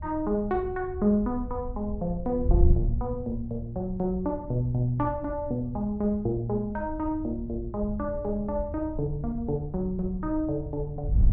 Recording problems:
wind noise; below 80 Hz, SNR 6 dB

